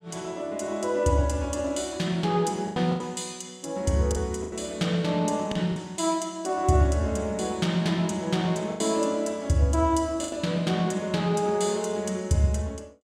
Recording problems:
packet loss; 4% of the sound replaced, filled with the last packet

